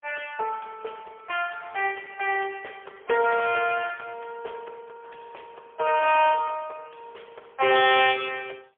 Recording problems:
phone line; 340 Hz to 3.3 kHz, AMR-NB, then MP3

